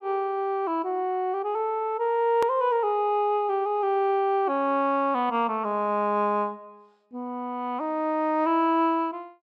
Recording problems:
hard cut with a click; at 2.5 s

